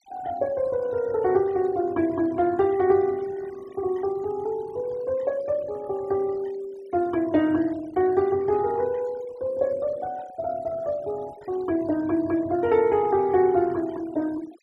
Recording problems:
noise reduction artefacts; signal-to-artefact ratio 23 dB

